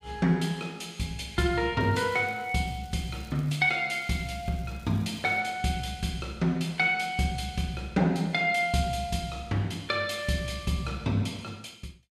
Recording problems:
crackling; from 2 to 3.5 s and from 4 to 5.5 s; loose cable, SNR 28 dB

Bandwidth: 15.5 kHz